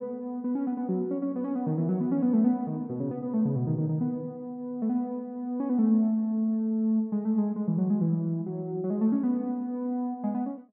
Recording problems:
none

